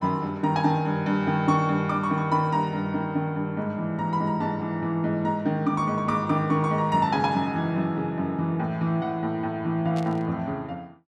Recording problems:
static burst; at 10 s; peak -12 dB vs average level

